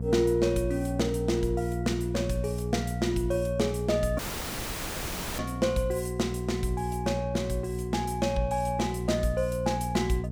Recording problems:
hum; 60 Hz, harmonics up to 480 Hz, SNR 5 dB
dropout; at 4 s for 1 s

